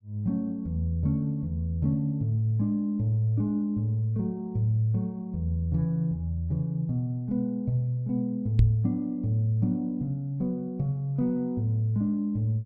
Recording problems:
knock on the microphone; at 8.5 s; peak +8 dB vs average level

